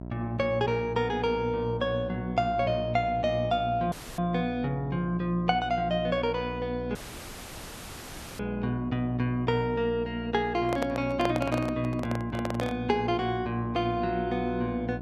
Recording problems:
electrical hum; 60 Hz, harmonics up to 1 kHz, SNR 10 dB
audio cutting out; at 4 s and at 7 s for 1.5 s
handling noise; from 11 to 13 s; peak +2 dB vs average level

